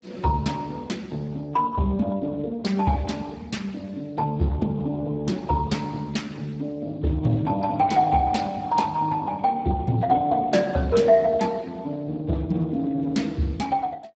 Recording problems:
lossy compression; Speex, log-spectral distance 3 dB, nothing above 7.6 kHz

